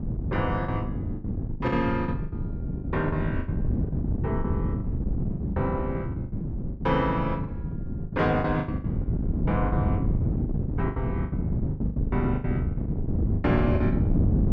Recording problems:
wind on the microphone; below 210 Hz, SNR -1 dB
packet loss; 15% of the sound replaced, filled with the last packet

